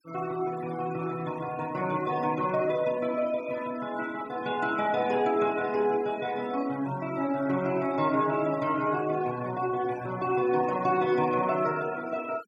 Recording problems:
noise reduction artefacts; signal-to-artefact ratio 19 dB

